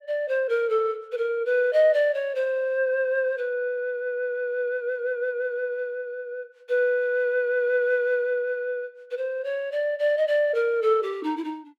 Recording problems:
none

